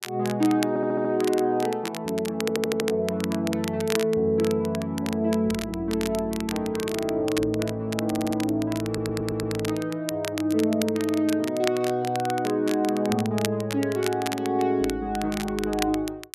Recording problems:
crackle; vinyl, SNR 11 dB
audio stuttering; 4 times, first at 0.5 s

